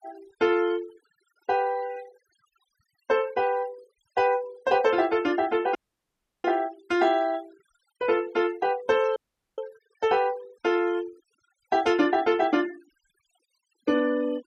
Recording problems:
noise reduction artefacts; signal-to-artefact ratio 23 dB
dropout; at 6 s for 0.5 s and at 9 s

